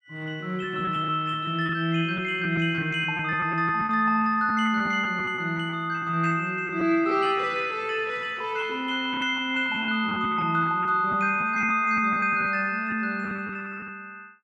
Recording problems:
packet loss; 9% of the sound replaced, filled with repeated pitch periods

